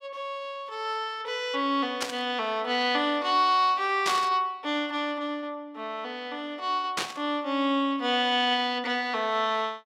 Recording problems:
static burst; at 2 s, at 4 s and at 7 s; peak +2 dB vs average level

